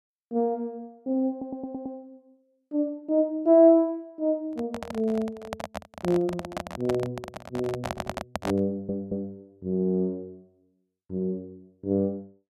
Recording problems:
audio stuttering; at 1.5 s, at 8 s and at 8.5 s
handling noise; from 4.5 to 9 s; peak 0 dB vs average level

